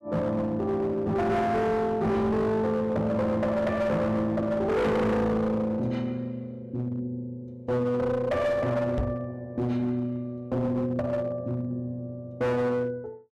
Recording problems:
distorted audio; hard clipping, uneven, signal-to-distortion ratio 7 dB
knock on the microphone; at 9 s; peak +2 dB vs average level

